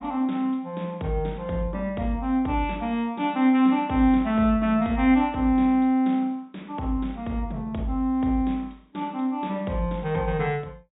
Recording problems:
treble missing; nothing above 4 kHz

